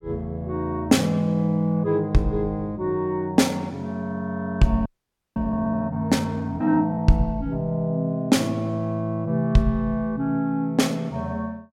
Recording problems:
audio freezing; at 5 s for 0.5 s

